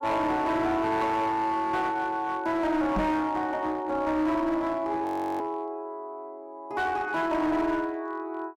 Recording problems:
distortion; hard clipping, uneven, signal-to-distortion ratio 10 dB
microphone thump; at 3 s; peak +1 dB vs average level
audio freezing; at 5 s

